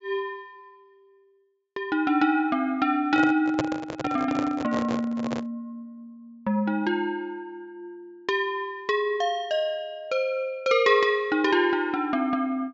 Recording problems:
treble missing; nothing above 8 kHz
microphone handling noise; from 3 to 5.5 s; peak +3 dB vs average level

